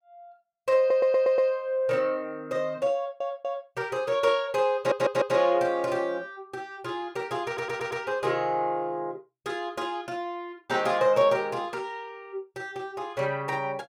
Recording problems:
stutter; 4 times, first at 1 s

